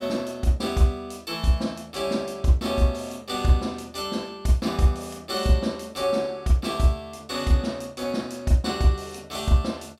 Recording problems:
none

